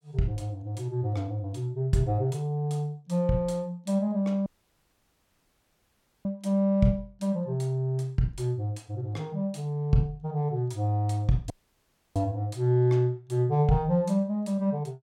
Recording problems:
dropout; at 4.5 s for 2 s and at 12 s for 0.5 s

